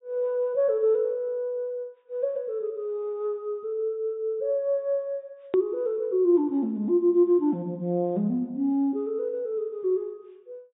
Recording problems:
treble missing; nothing above 4 kHz
click at an edit; at 5.5 s

